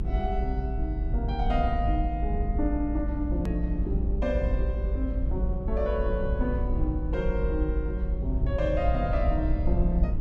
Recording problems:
low-frequency rumble; below 62 Hz, SNR -2 dB
click at an edit; at 3.5 s

